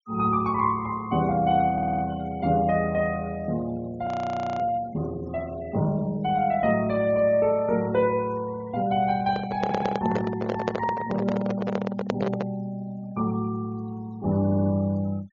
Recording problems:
low-pass filter; nothing above 7 kHz
denoising artefacts; signal-to-artefact ratio 23 dB
stutter; at 1.5 s, at 9.5 s and at 14 s
audio freezing; at 4 s for 0.5 s
microphone handling noise; from 9 to 13 s; peak +3 dB vs average level

